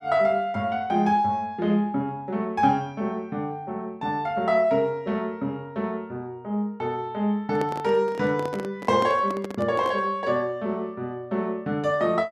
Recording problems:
microphone handling noise; from 7.5 to 10 s; peak -3 dB vs average level

